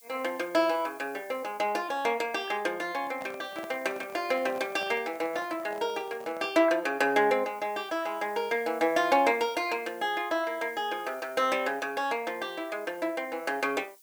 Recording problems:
hiss; SNR 25 dB
handling noise; from 3 to 6.5 s; peak -9 dB vs average level

